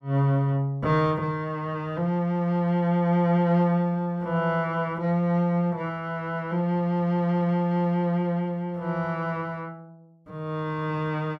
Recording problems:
none

